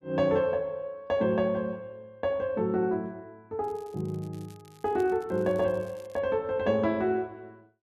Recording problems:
crackle; from 3.5 to 6 s; loose cable, SNR 29 dB

